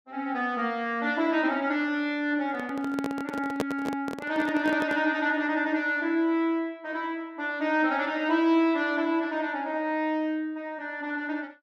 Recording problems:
microphone handling noise; from 2.5 to 5 s; peak +3 dB vs average level

